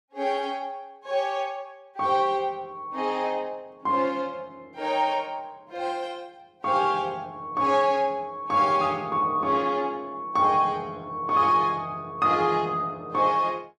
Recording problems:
none

